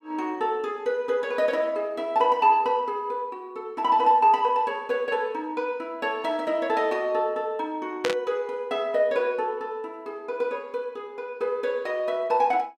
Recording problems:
burst of static; at 8 s; peak +2 dB vs average level

